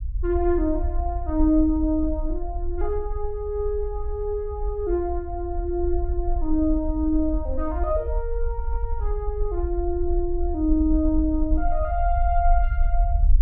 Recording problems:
low-frequency rumble; below 54 Hz, SNR 3 dB

